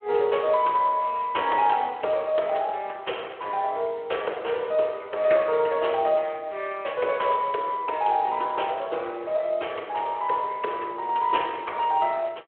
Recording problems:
phone line; 320 Hz to 3.3 kHz, Speex

